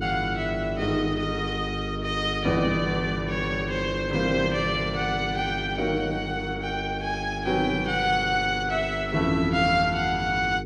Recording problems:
hum; 50 Hz, harmonics up to 450 Hz, SNR 7 dB

